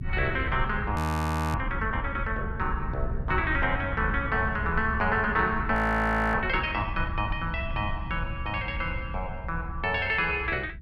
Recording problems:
low-frequency rumble; below 110 Hz, SNR 6 dB
frozen audio; at 1 s for 0.5 s and at 5.5 s for 0.5 s

